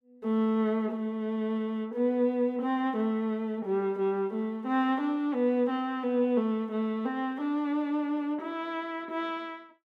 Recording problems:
none

